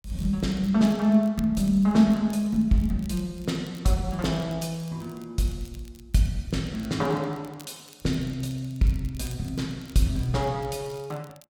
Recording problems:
crackle; vinyl, SNR 26 dB

